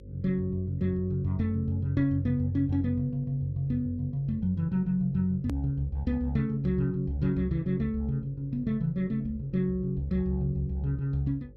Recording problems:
hum; 50 Hz, harmonics up to 550 Hz, SNR 20 dB
hard cut with a click; at 5.5 s

